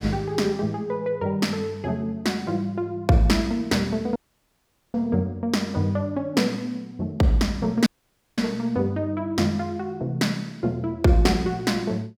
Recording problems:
dropout; at 4 s for 1 s and at 8 s for 0.5 s

